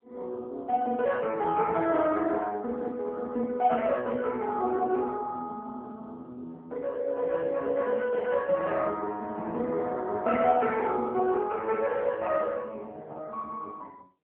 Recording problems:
telephone audio; 220 Hz to 3.4 kHz, AMR-NB

